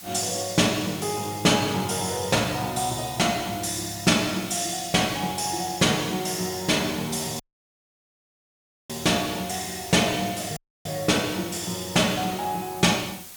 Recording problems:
hiss; slope +1 dB per octave, SNR 15 dB
dropout; at 7.5 s for 1.5 s and at 11 s

